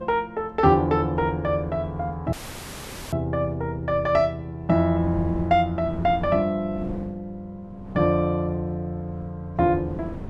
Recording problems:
wind on the microphone; below 260 Hz, SNR 16 dB
audio cutting out; at 2.5 s for 1 s

